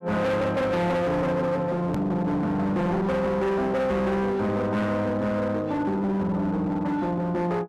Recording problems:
distorted audio; hard clipping, signal-to-distortion ratio 8 dB
edit click; at 2 s

